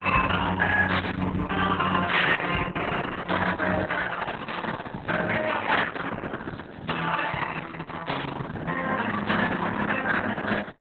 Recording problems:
lossy codec; Opus, then Opus, log-spectral distance 7 dB
crackling; from 4 to 6 s, from 6.5 to 8.5 s and at 9 s; loose cable, SNR 23 dB

